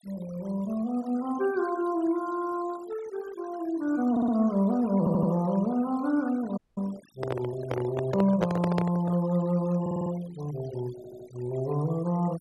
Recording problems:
denoising artefacts; signal-to-artefact ratio 20 dB
audio stuttering; 4 times, first at 4 s
dropout; at 6.5 s
microphone handling noise; from 7 to 9 s; peak +3 dB vs average level

